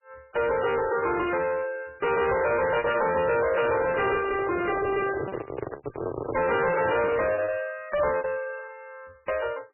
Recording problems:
lossy compression; MP3, log-spectral distance 5 dB, nothing above 2.4 kHz
distortion; soft clipping, signal-to-distortion ratio 7 dB
lost packets; 7% of the sound replaced, filled with repeated pitch periods
handling noise; from 3.5 to 7.5 s; peak -1 dB vs average level

